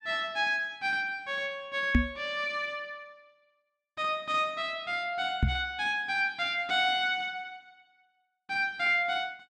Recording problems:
knock on the microphone; at 2 s and at 5.5 s; peak +9 dB vs average level

